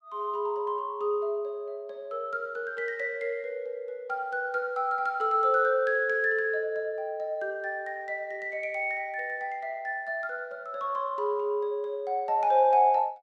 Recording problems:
none

